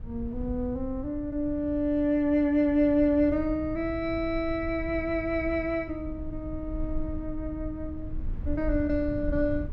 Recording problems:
low-frequency rumble; below 78 Hz, SNR 11 dB

